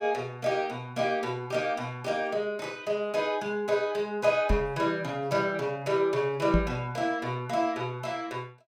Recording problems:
microphone bump; at 4.5 s and at 6.5 s; peak +7 dB vs average level

